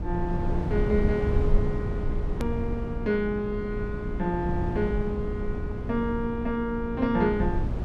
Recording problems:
electrical hum; 60 Hz, harmonics up to 900 Hz, SNR 12 dB
low-frequency rumble; below 120 Hz, SNR 2 dB
click at an edit; at 2.5 s

